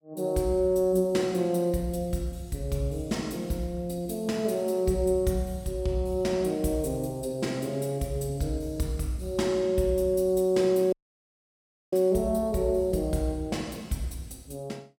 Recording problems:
audio cutting out; at 11 s for 1 s

